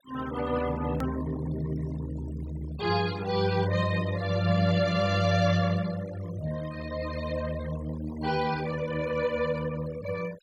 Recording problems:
noise reduction artefacts; signal-to-artefact ratio 16 dB
hard cut with a click; at 1 s

